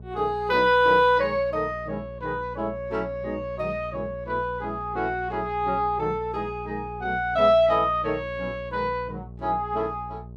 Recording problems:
hum; 60 Hz, harmonics up to 660 Hz, SNR 16 dB

